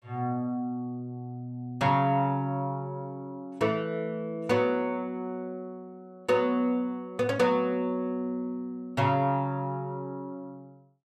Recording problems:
none

